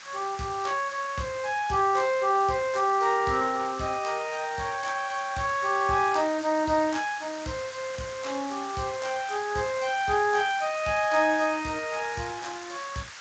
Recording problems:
lossy compression; Speex, log-spectral distance 13 dB, nothing above 7.6 kHz
background hiss; SNR 14 dB

